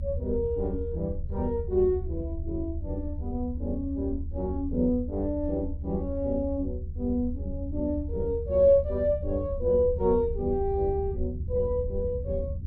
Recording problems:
rumble; below 80 Hz, SNR 7 dB

